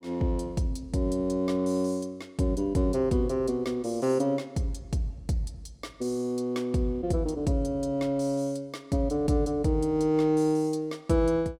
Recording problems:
none

